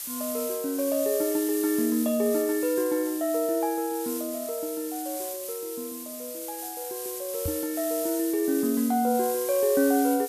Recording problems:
background hiss; SNR 7 dB
knock on the microphone; at 7.5 s; peak -2 dB vs average level

